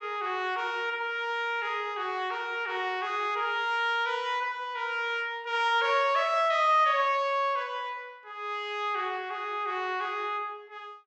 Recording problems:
low-pass filter; nothing above 7.9 kHz

